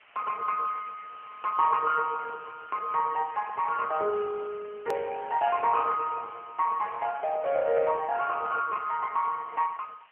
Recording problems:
phone line; 320 Hz to 3.1 kHz, AMR-NB
hiss; SNR 27 dB
hard cut with a click; at 5 s

